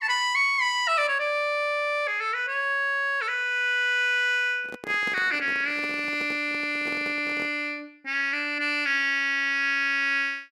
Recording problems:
microphone handling noise; from 4.5 to 7.5 s; peak -10 dB vs average level

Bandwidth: 14.5 kHz